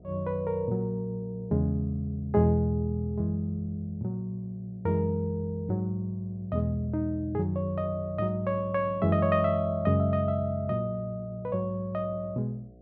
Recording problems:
hum; 60 Hz, harmonics up to 720 Hz, SNR 25 dB

